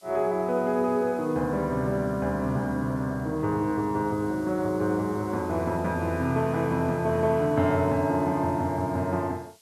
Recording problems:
background hiss; SNR 27 dB

